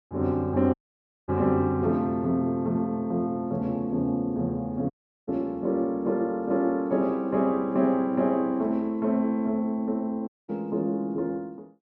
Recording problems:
dropout; at 0.5 s for 0.5 s, at 5 s and at 10 s

